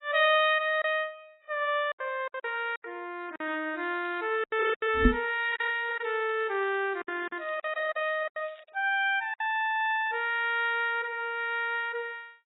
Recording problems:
codec artefacts; AAC, log-spectral distance 3 dB, nothing above 3.3 kHz
lost packets; 7% of the sound replaced, filled with silence
crackling; from 3.5 to 8.5 s; loose cable, SNR 28 dB
microphone thump; at 5 s; peak +9 dB vs average level

